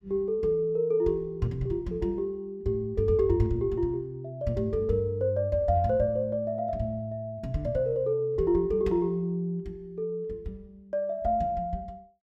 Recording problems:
none

